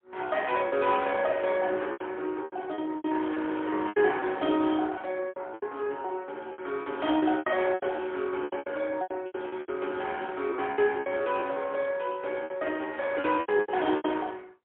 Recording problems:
telephone audio; 240 Hz to 3.5 kHz, AMR-NB, then MP3
lost packets; 14% of the sound replaced, filled with repeated pitch periods

